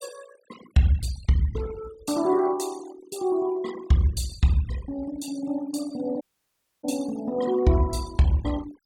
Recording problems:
noise reduction artefacts; signal-to-artefact ratio 19 dB
audio cutting out; at 6 s for 0.5 s

